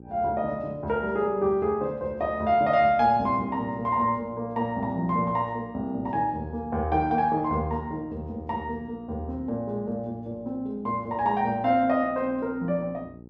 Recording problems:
electrical hum; 60 Hz, harmonics up to 840 Hz, SNR 21 dB

